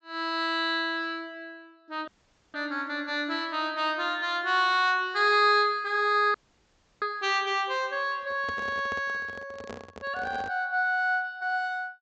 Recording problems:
treble missing; nothing above 8 kHz
dropout; at 2 s and at 6.5 s for 0.5 s
handling noise; from 8 to 11 s; peak -9 dB vs average level

